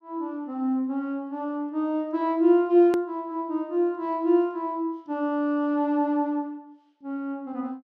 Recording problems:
edit click; at 3 s

